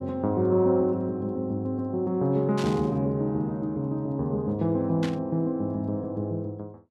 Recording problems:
burst of static; at 2.5 s and at 5 s; peak -6 dB vs average level

